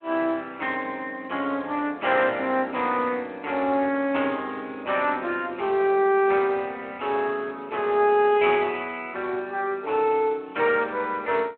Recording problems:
telephone audio; 240 Hz to 3.6 kHz, Speex

